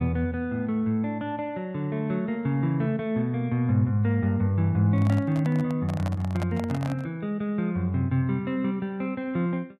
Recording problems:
microphone handling noise; from 5 to 7 s; peak -4 dB vs average level

